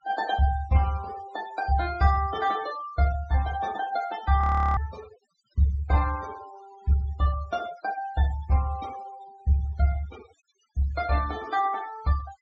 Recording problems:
low-pass filter; nothing above 8 kHz
denoising artefacts; signal-to-artefact ratio 18 dB
audio freezing; at 4.5 s

